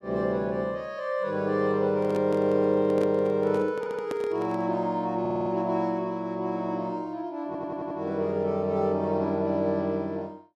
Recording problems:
microphone handling noise; from 2 to 4.5 s; peak -3 dB vs average level
audio stuttering; at 4 s, at 5 s and at 7.5 s

